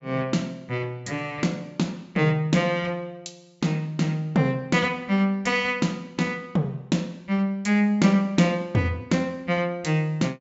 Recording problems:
treble cut off; nothing above 8 kHz

